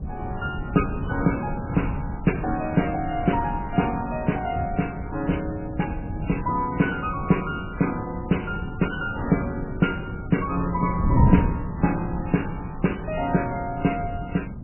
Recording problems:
lossy codec; MP3, log-spectral distance 4 dB, nothing above 2.7 kHz
wind on the microphone; below 180 Hz, SNR 5 dB

